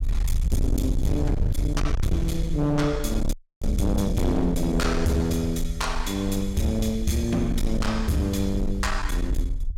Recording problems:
distortion; hard clipping, signal-to-distortion ratio 7 dB
low-frequency rumble; below 66 Hz, SNR 4 dB
frozen audio; at 3.5 s

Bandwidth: 16.5 kHz